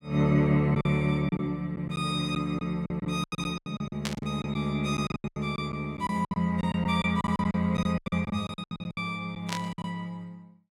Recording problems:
packet loss; 16% of the sound replaced, filled with silence
burst of static; at 4 s and at 9.5 s; peak 0 dB vs average level

